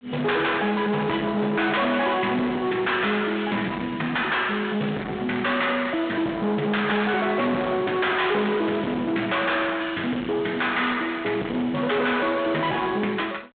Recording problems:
phone line; 150 Hz to 3.7 kHz, G.726
distorted audio; soft clipping, signal-to-distortion ratio 7 dB

